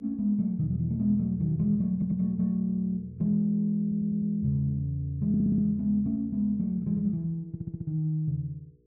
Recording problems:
hum; 60 Hz, harmonics up to 480 Hz, SNR 32 dB
stutter; 4 times, first at 2 s

